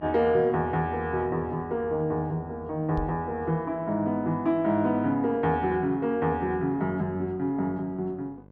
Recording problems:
electrical hum; 50 Hz, harmonics up to 1.1 kHz, SNR 24 dB
microphone bump; at 3 s; peak -3 dB vs average level

